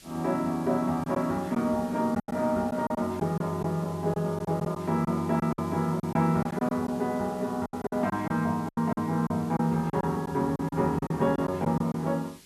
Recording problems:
hiss; SNR 23 dB
lost packets; 9% of the sound replaced, filled with silence

